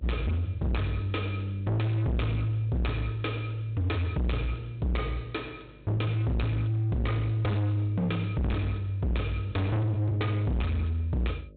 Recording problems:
low-pass filter; nothing above 4 kHz
distortion; hard clipping, signal-to-distortion ratio 6 dB
hum; 50 Hz, harmonics up to 600 Hz, SNR 25 dB

